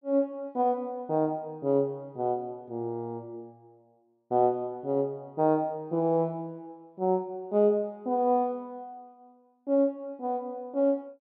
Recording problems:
none

